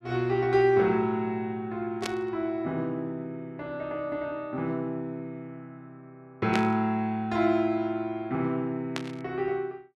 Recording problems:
burst of static; at 2 s, at 6.5 s and at 9 s; peak +1 dB vs average level

